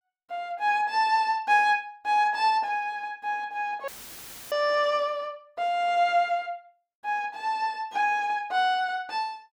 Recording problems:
dropout; at 4 s for 0.5 s; filled with static

